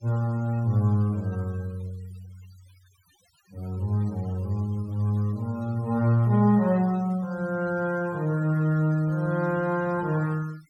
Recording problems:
denoising artefacts; signal-to-artefact ratio 26 dB

